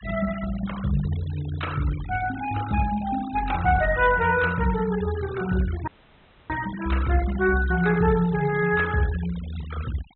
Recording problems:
treble cut off; nothing above 4 kHz
noise reduction artefacts; signal-to-artefact ratio 16 dB
dropout; at 6 s for 0.5 s

